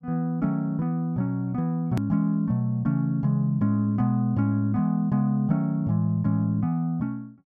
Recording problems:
hard cut with a click; at 2 s

